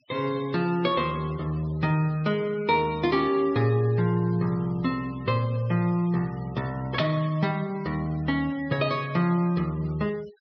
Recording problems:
treble missing; nothing above 5.5 kHz
noise reduction artefacts; signal-to-artefact ratio 23 dB

